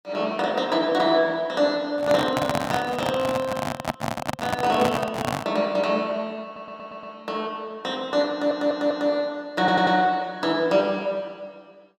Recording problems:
microphone handling noise; from 2 to 5.5 s; peak +2 dB vs average level
stutter; at 6.5 s, at 8.5 s and at 9.5 s

